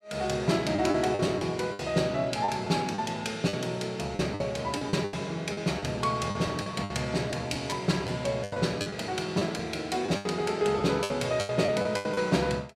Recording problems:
packet loss; 11% of the sound replaced, filled with the last packet

